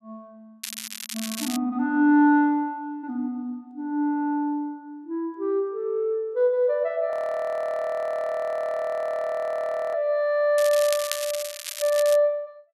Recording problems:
crackle; at 0.5 s and from 11 to 12 s; loose cable, SNR 8 dB
frozen audio; at 7 s for 3 s

